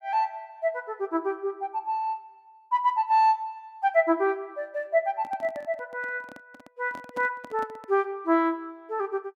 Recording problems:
microphone handling noise; from 5 to 8 s; peak -9 dB vs average level

